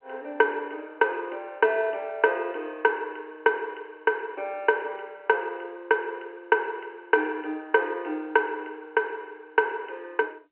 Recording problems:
telephone audio; 260 Hz to 3.1 kHz, G.711

